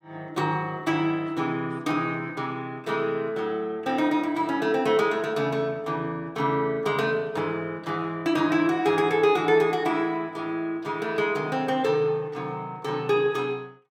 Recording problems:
none

